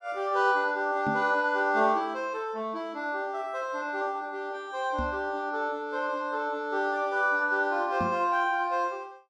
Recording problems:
knock on the microphone; at 1 s, at 5 s and at 8 s; peak -1 dB vs average level

